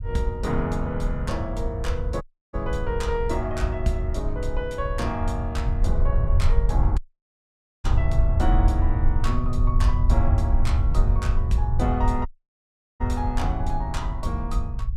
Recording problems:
low-frequency rumble; below 78 Hz, SNR -4 dB
dropout; at 2 s, at 7 s for 1 s and at 12 s for 0.5 s

